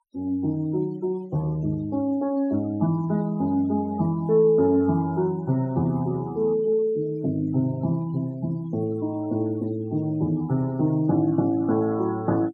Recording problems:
noise reduction artefacts; signal-to-artefact ratio 26 dB

